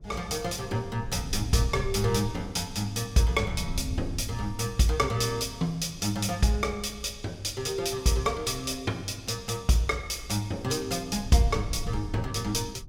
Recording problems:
wind noise; below 100 Hz, SNR 12 dB

